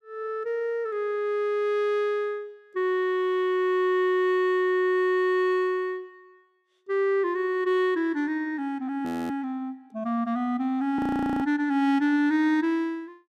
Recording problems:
audio freezing; at 9 s and at 11 s

